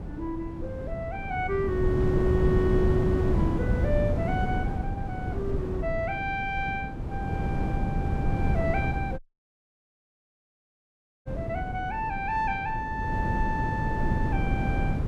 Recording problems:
wind noise; below 220 Hz, SNR -1 dB
dropout; at 9 s for 2 s

